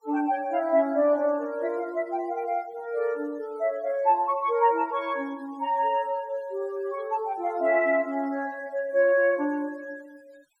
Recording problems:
denoising artefacts; signal-to-artefact ratio 28 dB

